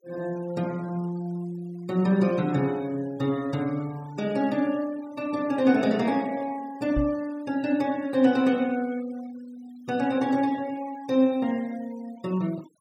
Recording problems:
noise reduction artefacts; signal-to-artefact ratio 23 dB
microphone bump; at 7 s; peak +2 dB vs average level

